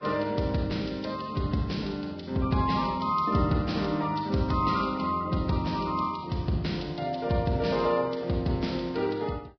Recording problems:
codec artefacts; Vorbis, log-spectral distance 4 dB, nothing above 5.3 kHz

